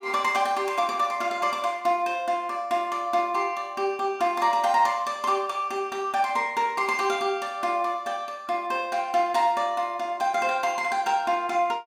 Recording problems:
none

